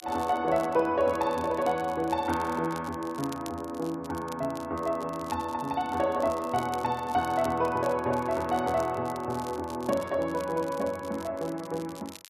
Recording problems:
crackling; vinyl, SNR 20 dB

